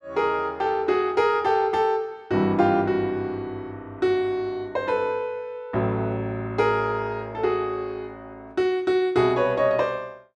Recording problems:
none

